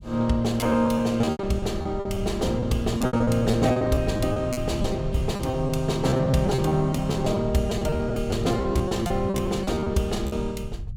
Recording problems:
low-frequency rumble; below 120 Hz, SNR 10 dB
packet loss; 15% of the sound replaced, filled with repeated pitch periods

